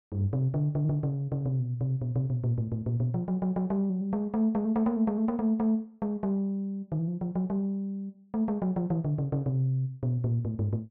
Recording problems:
none

